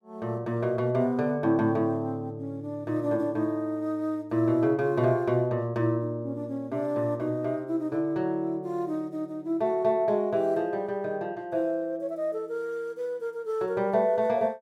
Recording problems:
none

